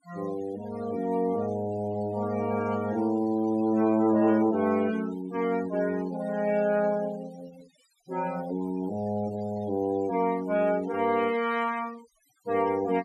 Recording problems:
denoising artefacts; signal-to-artefact ratio 20 dB

